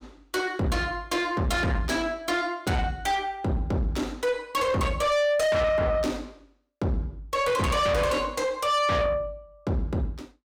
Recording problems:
distortion; soft clipping, signal-to-distortion ratio 6 dB

